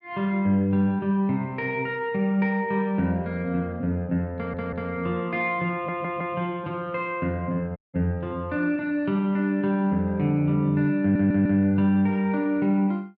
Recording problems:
audio stuttering; at 4.5 s, at 5.5 s and at 11 s
dropout; at 8 s

